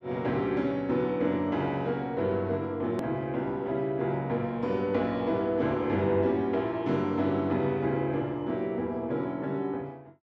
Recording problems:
click at an edit; at 3 s

